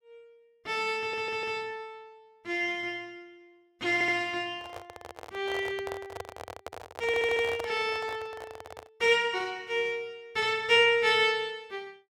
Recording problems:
stutter; at 1 s, at 4 s and at 7 s
microphone handling noise; from 4.5 to 9 s; peak -6 dB vs average level

